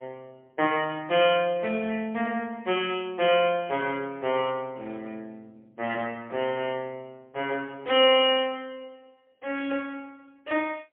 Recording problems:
telephone audio; 280 Hz to 3.3 kHz, AMR-NB, then MP3

